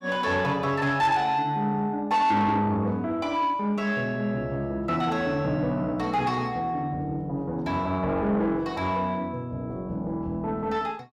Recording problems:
distorted audio; soft clipping, signal-to-distortion ratio 12 dB

